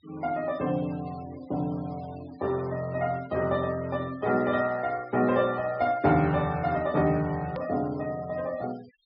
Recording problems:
low-pass filter; nothing above 5.5 kHz
noise reduction artefacts; signal-to-artefact ratio 21 dB
hard cut with a click; at 7.5 s

